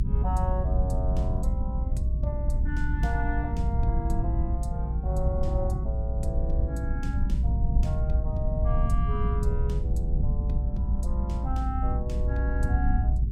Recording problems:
hum; 50 Hz, harmonics up to 400 Hz, SNR 10 dB
rumble; below 82 Hz, SNR -8 dB

